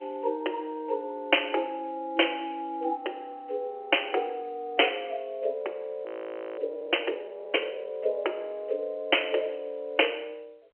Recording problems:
phone line; 320 Hz to 3.2 kHz, G.711
frozen audio; at 6 s for 0.5 s

